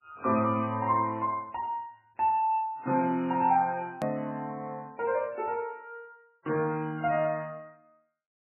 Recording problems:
lossy compression; MP3, log-spectral distance 2 dB, nothing above 13.1 kHz
click at an edit; at 4 s

